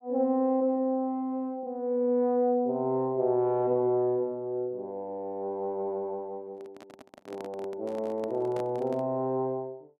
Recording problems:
microphone handling noise; from 6.5 to 9 s; peak -10 dB vs average level

